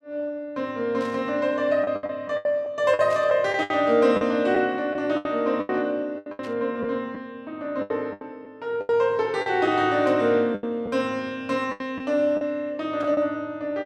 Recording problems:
lost packets; 10% of the sound replaced, filled with the last packet
static burst; 5 times, first at 1 s; peak -14 dB vs average level

